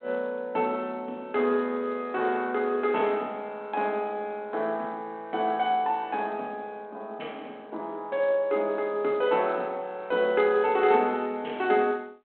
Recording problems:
telephone audio; 220 Hz to 3.6 kHz, G.726

